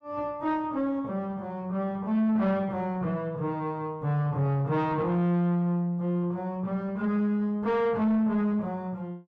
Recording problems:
distortion; soft clipping, signal-to-distortion ratio 11 dB

